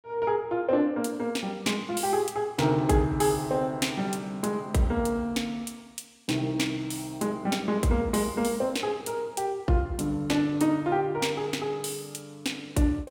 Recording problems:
none

